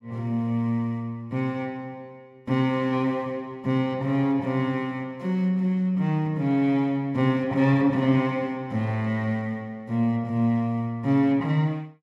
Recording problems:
none

